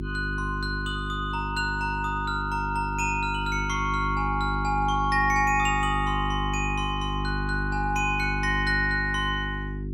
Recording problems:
mains hum; 50 Hz, harmonics up to 400 Hz, SNR 5 dB

